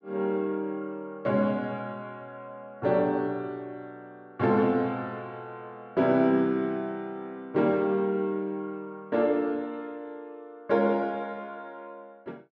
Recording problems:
none

